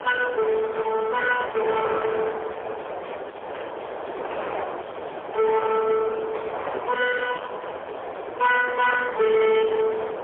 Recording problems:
phone line; 320 Hz to 2.5 kHz, AMR-NB, then MP3
distorted audio; soft clipping, signal-to-distortion ratio 8 dB
wind on the microphone; below 1 kHz, SNR 10 dB

